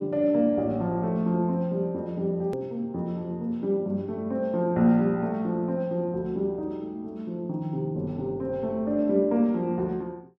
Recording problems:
hard cut with a click; at 2.5 s

